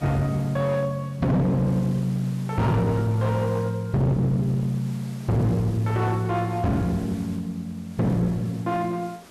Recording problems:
distortion; hard clipping, uneven, signal-to-distortion ratio 7 dB
background hiss; slope -4 dB per octave, SNR 22 dB

